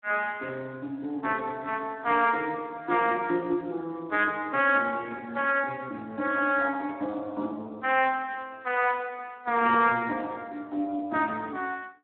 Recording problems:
phone line; 260 Hz to 3.1 kHz, Speex

